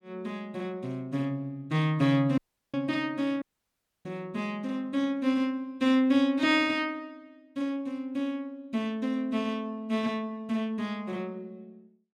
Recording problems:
dropout; at 2.5 s and at 3.5 s for 0.5 s

